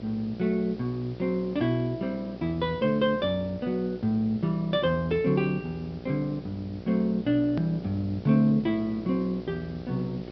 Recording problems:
treble missing; nothing above 5.5 kHz
hum; 60 Hz, harmonics up to 1.3 kHz, SNR 15 dB
background hiss; slope -2 dB per octave, SNR 27 dB
hard cut with a click; at 7.5 s

